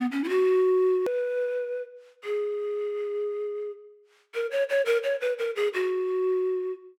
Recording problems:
hard cut with a click; at 1 s

